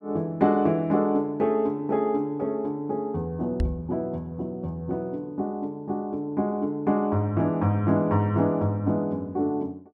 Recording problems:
knock on the microphone; at 3.5 s; peak +3 dB vs average level

